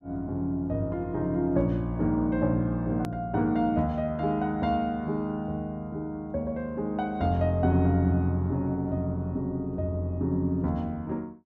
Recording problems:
click at an edit; at 3 s

